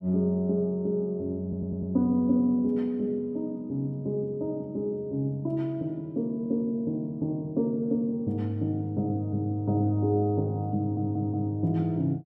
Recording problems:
stutter; at 1.5 s and at 11 s

